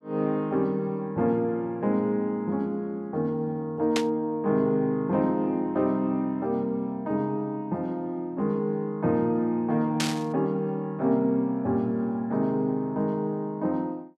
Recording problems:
burst of static; at 4 s and at 10 s; peak +3 dB vs average level

